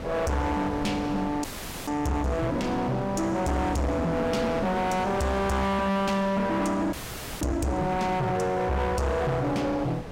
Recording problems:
distorted audio; hard clipping, uneven, signal-to-distortion ratio 5 dB
wind noise; below 770 Hz, SNR 12 dB
audio freezing; at 1.5 s and at 7 s

